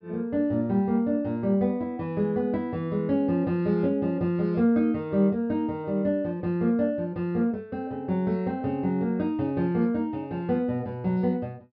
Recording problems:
treble cut off; nothing above 5.5 kHz

